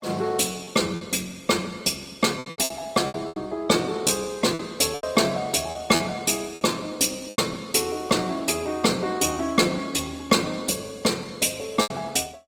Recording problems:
lossy codec; Opus, log-spectral distance 5 dB
packet loss; 8% of the sound replaced, filled with repeated pitch periods

